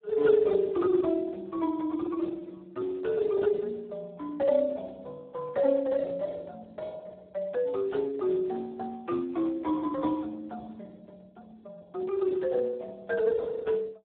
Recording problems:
phone line; 240 Hz to 2 kHz, Speex

